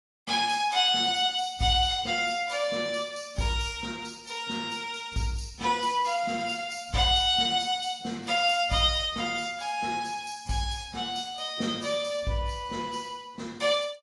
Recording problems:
lossy compression; AAC, log-spectral distance 4 dB, nothing above 10.7 kHz

